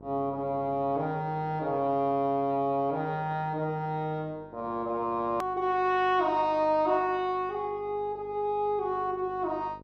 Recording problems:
hum; 50 Hz, harmonics up to 1.1 kHz, SNR 23 dB
hard cut with a click; at 5.5 s

